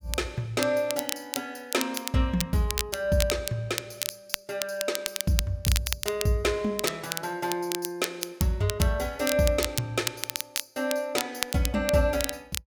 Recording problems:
crackling; vinyl, SNR 5 dB

